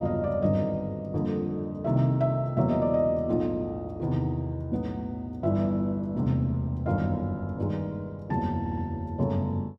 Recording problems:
stutter; at 8.5 s

